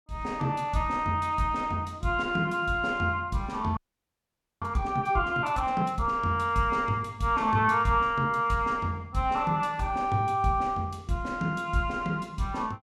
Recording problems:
audio freezing; at 4 s for 1 s

